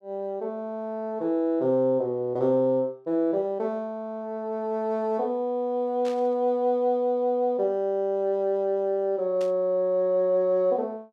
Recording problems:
burst of static; at 6 s and at 9.5 s; peak -12 dB vs average level

